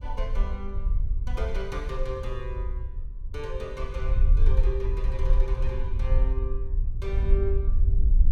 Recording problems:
rumble; below 56 Hz, SNR -8 dB

